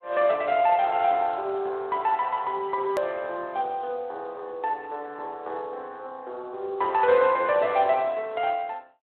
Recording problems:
telephone audio; 340 Hz to 3.6 kHz, Speex
click at an edit; at 3 s

